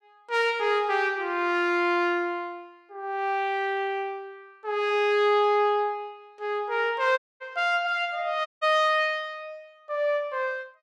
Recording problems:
audio cutting out; at 7 s and at 8.5 s

